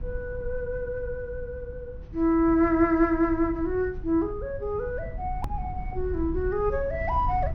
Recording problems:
treble missing; nothing above 6.3 kHz
rumble; below 84 Hz, SNR 11 dB
click at an edit; at 5.5 s

